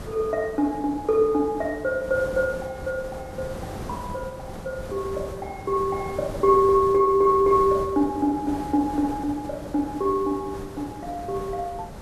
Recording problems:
background hiss; slope -7 dB per octave, SNR 14 dB

